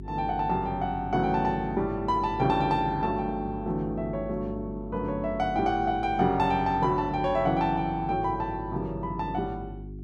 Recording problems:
hum; 50 Hz, harmonics up to 400 Hz, SNR 13 dB

